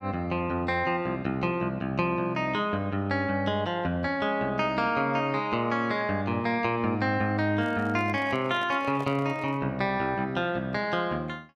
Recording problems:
handling noise; from 7.5 to 9.5 s; peak -8 dB vs average level

